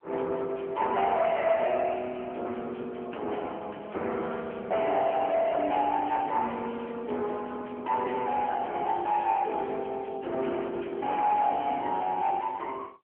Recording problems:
telephone audio; 300 Hz to 3.2 kHz, AMR-NB
distortion; soft clipping, signal-to-distortion ratio 11 dB

